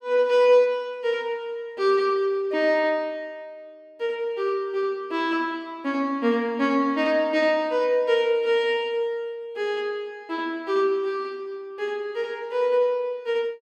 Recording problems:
none

